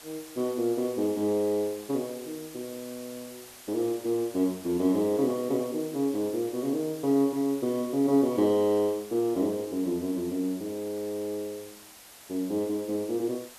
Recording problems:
hiss; slope -1 dB per octave, SNR 18 dB

